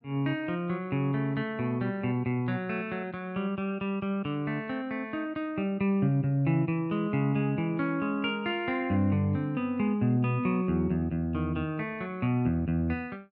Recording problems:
none

